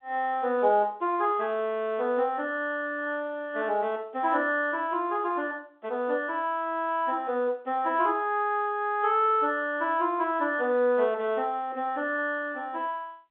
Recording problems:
phone line; 240 Hz to 3.6 kHz, G.711

